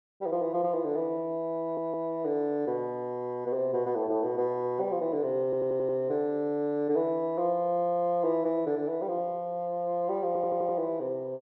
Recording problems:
stutter; at 1.5 s, at 5.5 s and at 10 s

